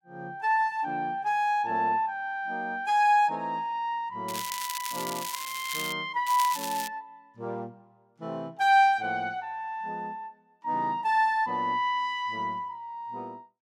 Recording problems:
crackling; from 4.5 to 6 s and at 6.5 s; loose cable, SNR 8 dB

